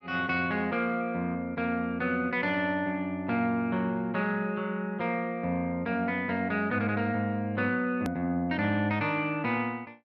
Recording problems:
click at an edit; at 8 s

